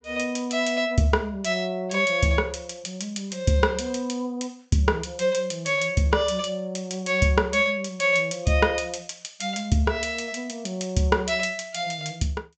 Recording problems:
treble cut off; nothing above 8 kHz

